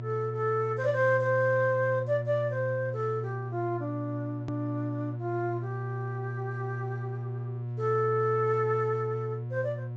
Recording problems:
treble cut off; nothing above 8 kHz
mains hum; 60 Hz, harmonics up to 720 Hz, SNR 6 dB
click at an edit; at 4.5 s

